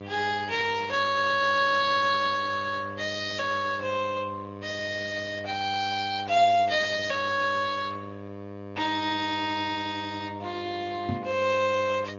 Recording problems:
treble cut off; nothing above 6.9 kHz
codec artefacts; Speex, log-spectral distance 5 dB
hum; 50 Hz, harmonics up to 2.4 kHz, SNR 13 dB
microphone bump; at 11 s; peak 0 dB vs average level

